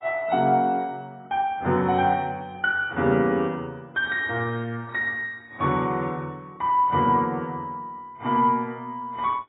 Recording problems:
codec artefacts; AAC, then AAC, log-spectral distance 2 dB, nothing above 3.2 kHz

